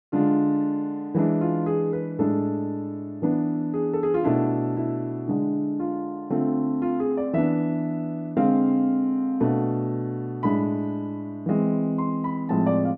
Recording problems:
none

